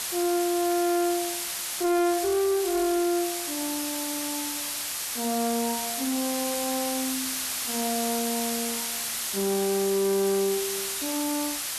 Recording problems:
distorted audio; soft clipping, signal-to-distortion ratio 11 dB
hiss; slope +1 dB per octave, SNR 1 dB

